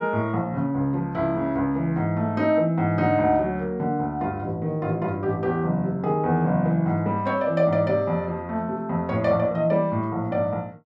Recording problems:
none

